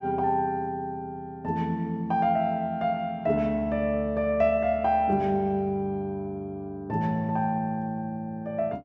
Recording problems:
none

